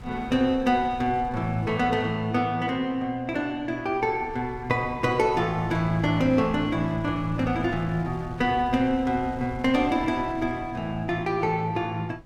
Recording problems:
wind noise; below 150 Hz, SNR 17 dB

